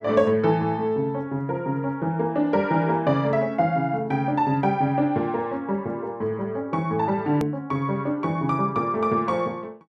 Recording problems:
edit click; at 7.5 s

